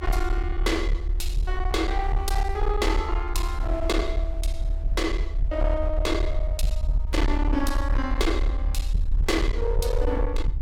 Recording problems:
distorted audio; hard clipping, uneven, signal-to-distortion ratio 9 dB
low-frequency rumble; below 58 Hz, strongest tone 36 Hz, SNR -1 dB
wind on the microphone; below 910 Hz, SNR 21 dB

